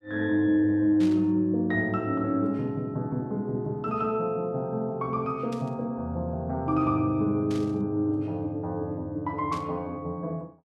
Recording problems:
static burst; 4 times, first at 1 s; peak -11 dB vs average level

